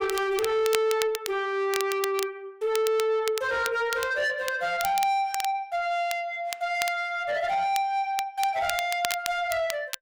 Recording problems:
distortion; soft clipping, signal-to-distortion ratio 11 dB
crackling; vinyl, SNR 10 dB

